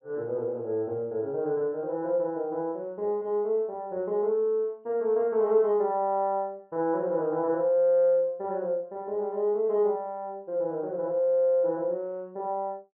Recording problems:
low-pass filter; nothing above 3.1 kHz

